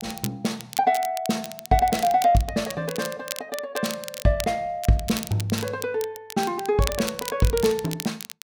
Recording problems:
crackle; vinyl, SNR 11 dB

